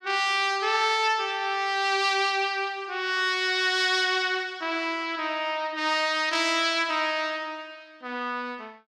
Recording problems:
none

